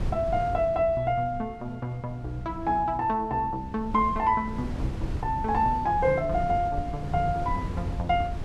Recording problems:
wind noise; below 160 Hz, SNR 9 dB

